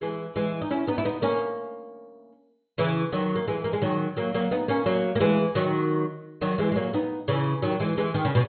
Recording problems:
lossy codec; MP2, log-spectral distance 3 dB, nothing above 4.2 kHz

